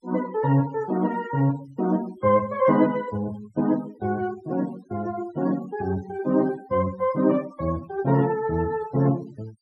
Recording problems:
noise reduction artefacts; signal-to-artefact ratio 22 dB

